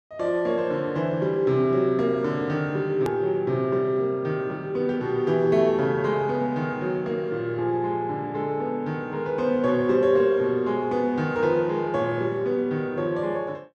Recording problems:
edit click; at 3 s

